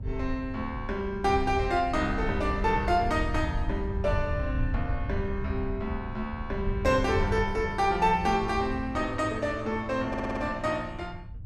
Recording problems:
wind noise; below 96 Hz, SNR 7 dB
audio stuttering; at 10 s

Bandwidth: 13.5 kHz